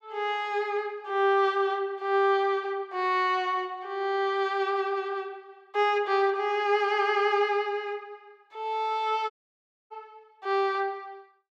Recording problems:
audio cutting out; at 9.5 s for 0.5 s

